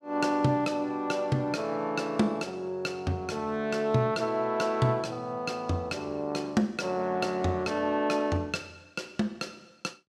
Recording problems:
none

